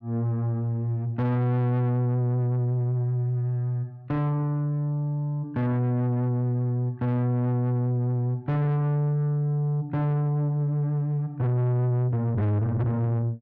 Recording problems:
distortion; soft clipping, signal-to-distortion ratio 7 dB

